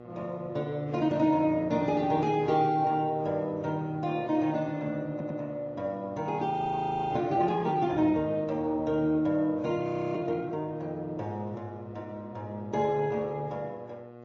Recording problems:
treble cut off; nothing above 6.2 kHz
lossy compression; Vorbis, then Vorbis, log-spectral distance 2 dB
hum; 60 Hz, harmonics up to 2 kHz, SNR 18 dB
stutter; at 5 s
audio freezing; at 6.5 s for 0.5 s and at 10 s

